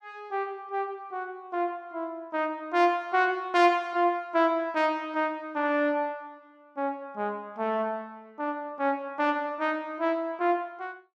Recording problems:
none

